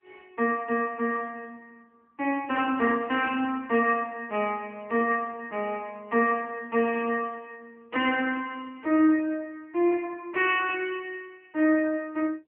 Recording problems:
telephone audio; 190 Hz to 3.2 kHz, AMR-NB

